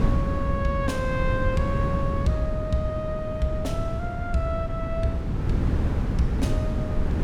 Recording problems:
wind noise; below 180 Hz, SNR -2 dB

